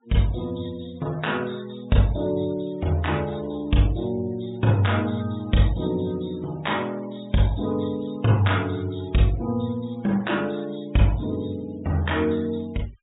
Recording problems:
treble cut off; nothing above 4 kHz
denoising artefacts; signal-to-artefact ratio 24 dB

